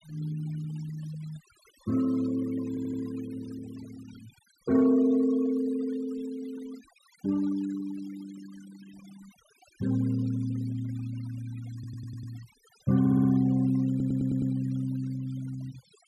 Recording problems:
denoising artefacts; signal-to-artefact ratio 22 dB
stutter; 4 times, first at 2.5 s

